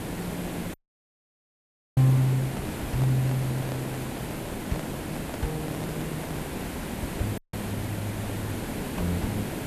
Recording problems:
background hiss; slope -6 dB per octave, SNR 4 dB
audio cutting out; at 0.5 s for 1 s and at 7.5 s
handling noise; from 2.5 to 6.5 s; peak -4 dB vs average level

